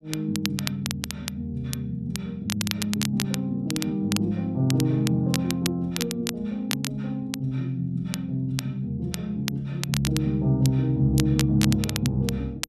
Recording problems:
crackling; vinyl, SNR 7 dB

